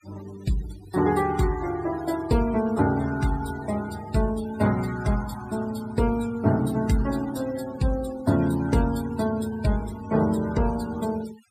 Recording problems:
noise reduction artefacts; signal-to-artefact ratio 17 dB

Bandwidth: 14.5 kHz